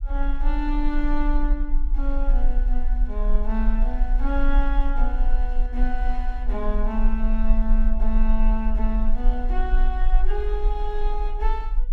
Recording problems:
low-frequency rumble; below 38 Hz, strongest tone 22 Hz, SNR -5 dB

